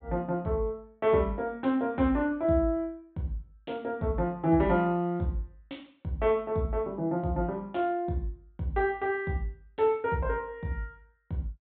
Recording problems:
treble cut off; nothing above 4 kHz

